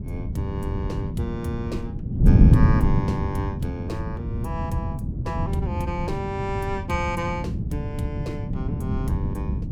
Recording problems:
wind noise; below 180 Hz, SNR -6 dB

